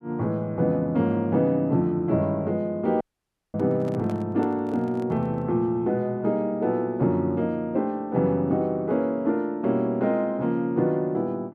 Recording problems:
dropout; at 3 s for 0.5 s
handling noise; from 3.5 to 5.5 s; peak -10 dB vs average level

